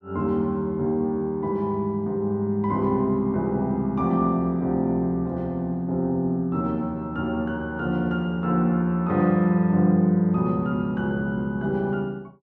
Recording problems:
none

